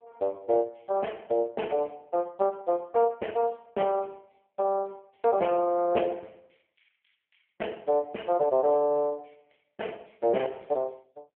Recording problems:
phone line; 240 Hz to 3.2 kHz, AMR-NB

